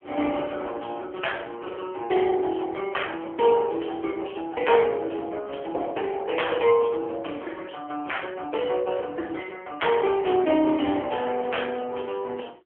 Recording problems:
telephone audio; 260 Hz to 3.4 kHz, AMR-NB

